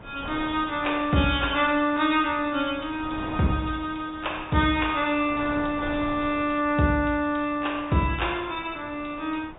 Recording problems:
treble missing; nothing above 4 kHz
wind on the microphone; below 970 Hz, SNR 16 dB

